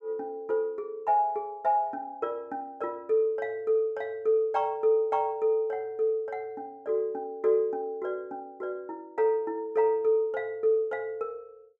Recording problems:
none

